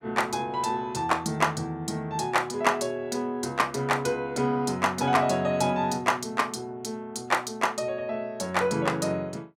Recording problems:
none

